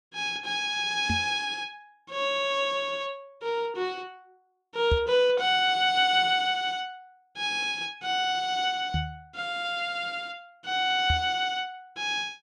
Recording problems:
knock on the microphone; 4 times, first at 1 s; peak +3 dB vs average level

